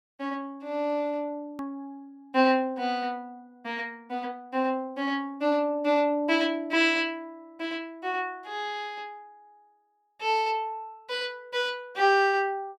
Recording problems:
hard cut with a click; at 1.5 s

